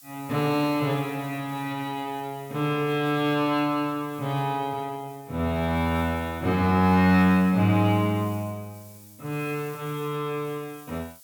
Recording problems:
background hiss; SNR 23 dB

